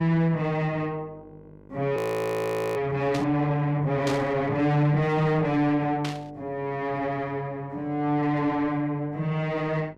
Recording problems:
distortion; soft clipping, signal-to-distortion ratio 8 dB
electrical hum; 50 Hz, harmonics up to 1.6 kHz, SNR 25 dB
frozen audio; at 2 s for 1 s
static burst; at 3 s, at 4 s and at 6 s; peak -3 dB vs average level

